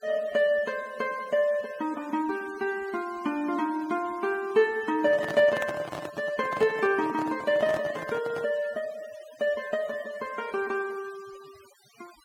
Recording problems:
noise reduction artefacts; signal-to-artefact ratio 20 dB
handling noise; from 5 to 8.5 s; peak -3 dB vs average level

